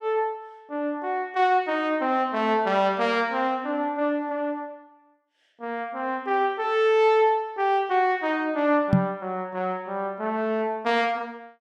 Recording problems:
knock on the microphone; at 9 s; peak +8 dB vs average level

